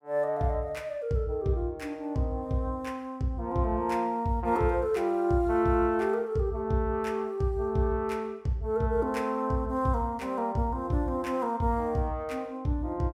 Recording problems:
none

